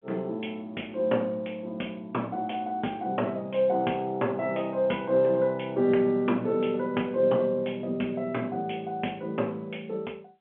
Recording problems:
phone line; 190 Hz to 3.4 kHz, G.711

